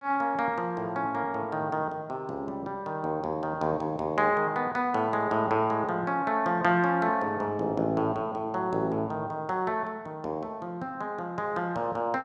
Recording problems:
none

